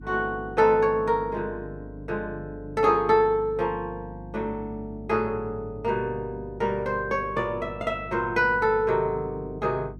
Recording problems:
hum; 50 Hz, harmonics up to 350 Hz, SNR 17 dB

